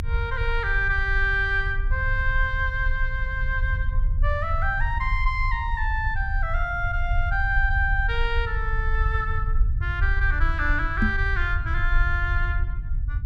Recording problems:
rumble; below 68 Hz, strongest tone 28 Hz, SNR 1 dB
knock on the microphone; at 11 s; peak +6 dB vs average level

